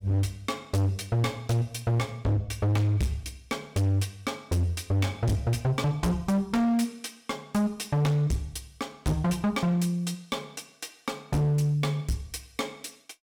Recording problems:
distorted audio; hard clipping, signal-to-distortion ratio 7 dB

